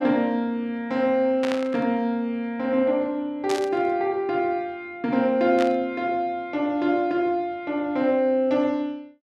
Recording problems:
burst of static; at 1.5 s, at 3.5 s and at 5.5 s; peak -4 dB vs average level

